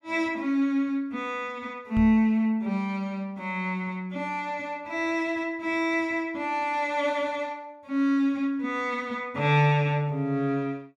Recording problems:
microphone thump; at 2 s; peak -1 dB vs average level

